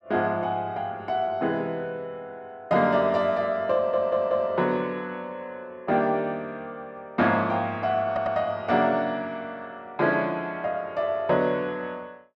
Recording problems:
stutter; at 4 s and at 8 s

